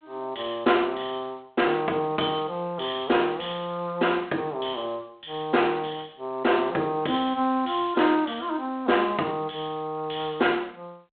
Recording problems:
phone line; 260 Hz to 3.5 kHz, G.726

